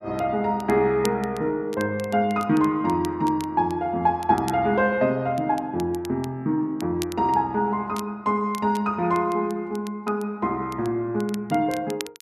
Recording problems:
crackling; vinyl, SNR 20 dB

